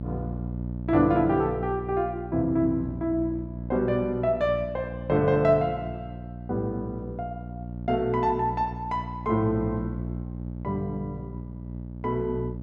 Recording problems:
electrical hum; 60 Hz, harmonics up to 660 Hz, SNR 9 dB

